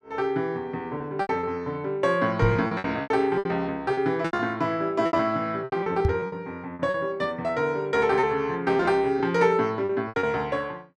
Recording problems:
packet loss; 11% of the sound replaced, filled with repeated pitch periods
microphone thump; at 2.5 s and at 6 s; peak +5 dB vs average level

